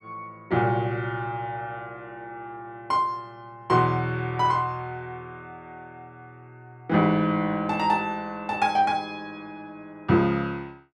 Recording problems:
none

